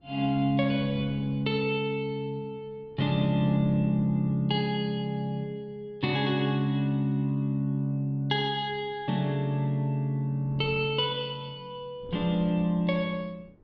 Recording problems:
wind on the microphone; below 310 Hz, SNR 19 dB

